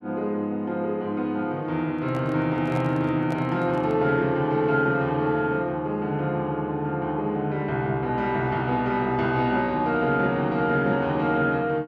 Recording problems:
handling noise; from 2 to 4 s; peak -8 dB vs average level

